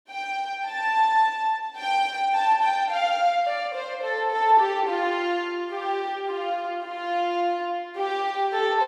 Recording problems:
none

